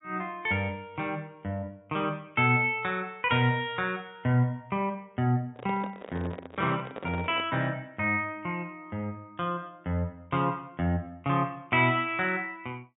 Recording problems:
treble cut off; nothing above 4 kHz
microphone handling noise; from 5.5 to 7.5 s; peak -5 dB vs average level

